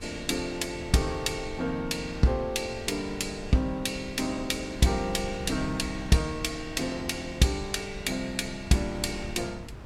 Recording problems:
wind on the microphone; below 200 Hz, SNR 14 dB

